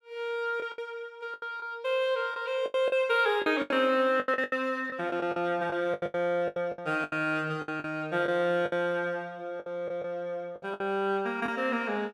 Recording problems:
packet loss; 13% of the sound replaced, filled with the last packet

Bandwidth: 14.5 kHz